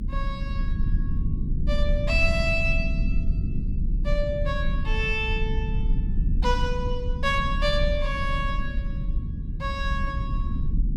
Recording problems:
low-frequency rumble; below 82 Hz, SNR 0 dB

